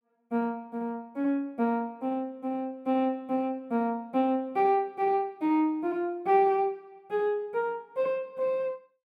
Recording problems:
none

